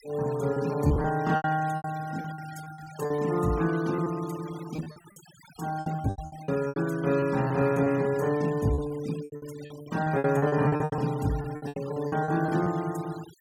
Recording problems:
denoising artefacts; signal-to-artefact ratio 18 dB
packet loss; 15% of the sound replaced, filled with repeated pitch periods

